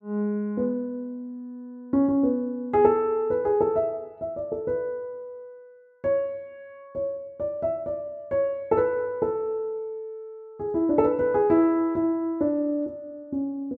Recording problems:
none

